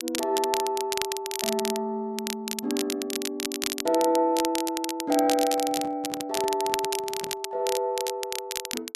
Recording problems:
crackle; vinyl, SNR 5 dB
microphone handling noise; from 5.5 to 7.5 s; peak -9 dB vs average level

